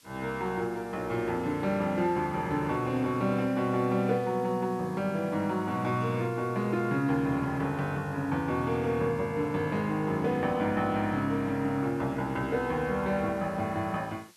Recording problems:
hiss; slope +2 dB per octave, SNR 27 dB

